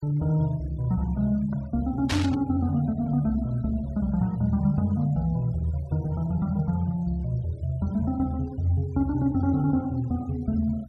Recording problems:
denoising artefacts; signal-to-artefact ratio 25 dB
static burst; at 2 s; peak +1 dB vs average level

